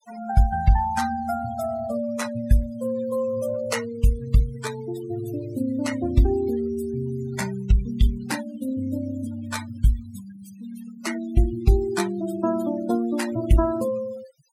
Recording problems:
denoising artefacts; signal-to-artefact ratio 14 dB

